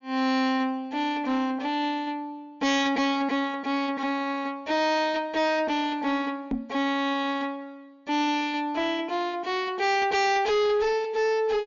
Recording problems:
treble missing; nothing above 6.9 kHz
distortion; soft clipping, signal-to-distortion ratio 8 dB
microphone bump; at 6.5 s; peak +1 dB vs average level

